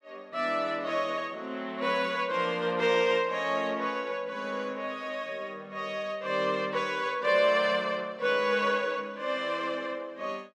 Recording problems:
none

